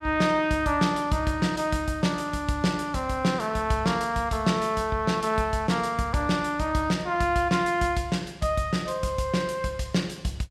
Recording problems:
none

